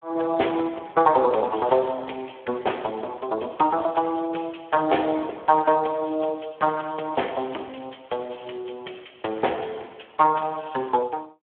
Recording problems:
phone line; 280 Hz to 3.4 kHz, Speex

